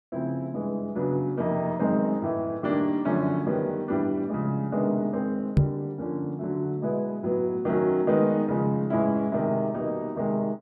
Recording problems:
microphone thump; at 5.5 s; peak +10 dB vs average level

